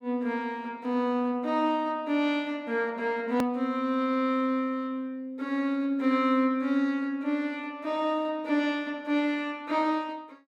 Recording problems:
edit click; at 3.5 s

